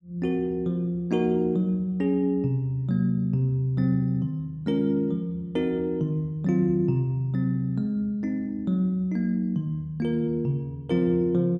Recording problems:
none

